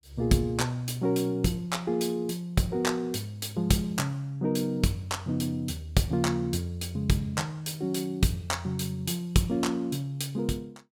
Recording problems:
none

